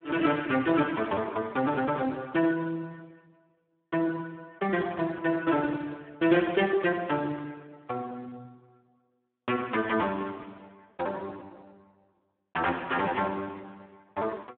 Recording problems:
telephone audio; 260 Hz to 3.3 kHz, Speex

